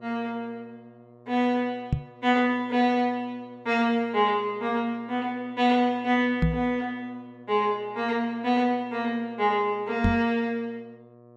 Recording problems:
hum; 60 Hz, harmonics up to 1.3 kHz, SNR 26 dB
knock on the microphone; at 2 s, at 6.5 s and at 10 s; peak +6 dB vs average level

